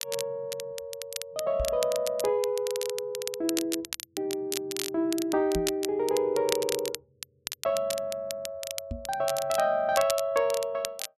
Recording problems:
crackle; vinyl, SNR 8 dB
microphone thump; at 1.5 s, at 5.5 s and at 9 s; peak -1 dB vs average level

